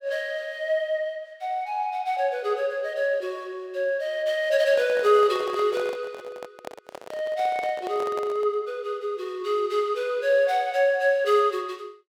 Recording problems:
microphone handling noise; from 4.5 to 8.5 s; peak -7 dB vs average level

